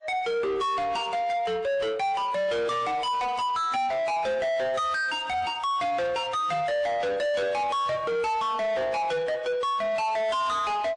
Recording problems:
lossy codec; AAC, then MP3, log-spectral distance 2 dB, nothing above 9 kHz
distortion; soft clipping, signal-to-distortion ratio 7 dB

